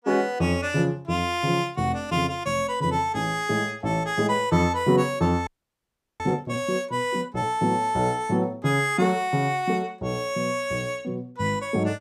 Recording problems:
audio freezing; at 5.5 s for 0.5 s

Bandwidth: 15.5 kHz